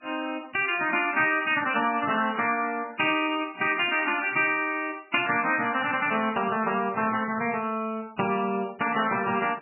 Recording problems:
lossy codec; MP3, log-spectral distance 4 dB, nothing above 2.5 kHz

